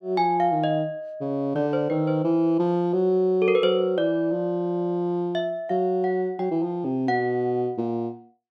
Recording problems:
none

